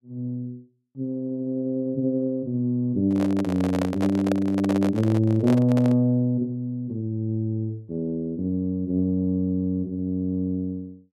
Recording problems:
microphone handling noise; from 3 to 6 s; peak +1 dB vs average level

